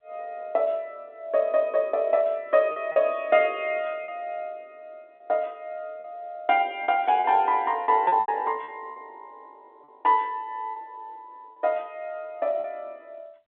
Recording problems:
telephone audio; 240 Hz to 3.5 kHz, G.711
lost packets; 5% of the sound replaced, filled with repeated pitch periods

